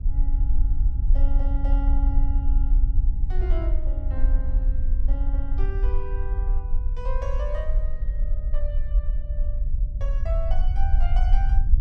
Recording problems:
rumble; below 48 Hz, strongest tone 20 Hz, SNR -13 dB

